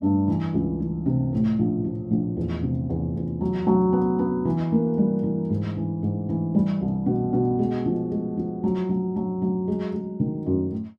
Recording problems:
none

